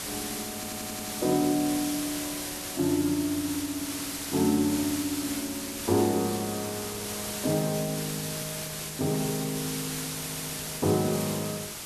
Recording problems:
background hiss; slope -1 dB per octave, SNR 4 dB
audio stuttering; at 0.5 s and at 10 s

